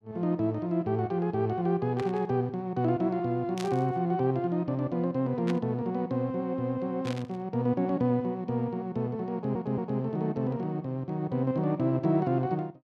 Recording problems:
burst of static; 4 times, first at 2 s; peak -5 dB vs average level
stutter; at 9.5 s

